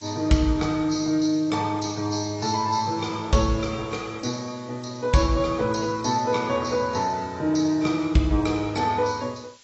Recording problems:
lossy compression; AAC, log-spectral distance 6 dB, nothing above 6.5 kHz
background hiss; SNR 28 dB

